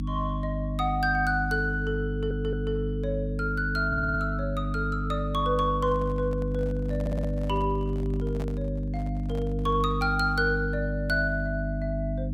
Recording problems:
hum; 50 Hz, harmonics up to 300 Hz, SNR 1 dB
stutter; at 2 s, at 4 s and at 7 s
handling noise; from 6 to 10 s; peak -7 dB vs average level

